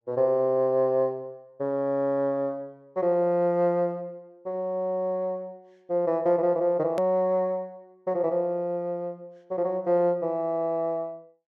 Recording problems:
hard cut with a click; at 7 s

